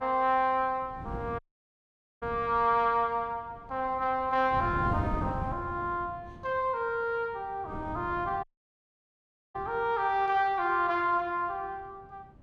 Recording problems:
wind noise; below 260 Hz, SNR 11 dB
dropout; at 1.5 s for 1 s and at 8.5 s for 1 s

